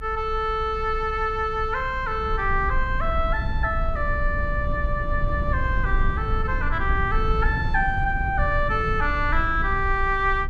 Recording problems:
low-frequency rumble; below 72 Hz, strongest tone 24 Hz, SNR 4 dB

